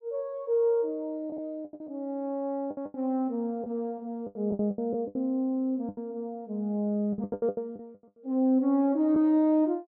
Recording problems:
lost packets; 11% of the sound replaced, filled with the last packet

